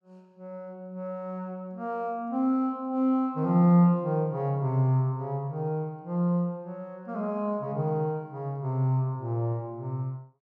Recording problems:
none

